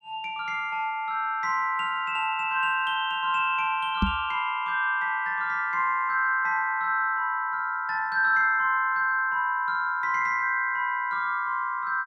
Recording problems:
knock on the microphone; at 4 s; peak +4 dB vs average level

